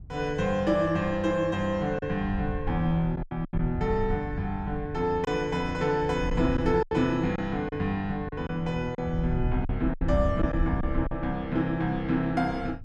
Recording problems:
wind on the microphone; below 88 Hz, SNR 9 dB
packet loss; 5% of the sound replaced, filled with silence

